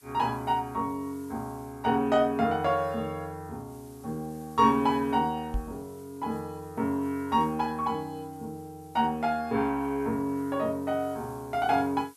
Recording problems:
background hiss; slope +1 dB per octave, SNR 27 dB
microphone thump; at 5.5 s; peak 0 dB vs average level

